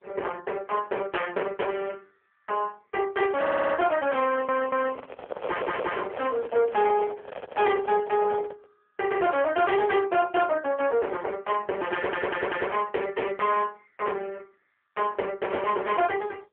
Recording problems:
phone line; 370 Hz to 3.4 kHz, AMR-NB
distortion; hard clipping, uneven, signal-to-distortion ratio 7 dB
stutter; 4 times, first at 3.5 s
microphone handling noise; from 4.5 to 8.5 s; peak -1 dB vs average level

